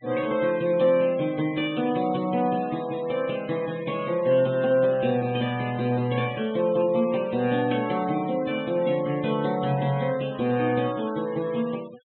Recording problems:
treble missing; nothing above 3.7 kHz
denoising artefacts; signal-to-artefact ratio 21 dB

